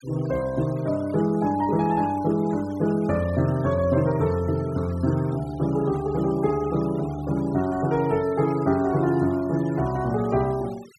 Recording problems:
denoising artefacts; signal-to-artefact ratio 22 dB

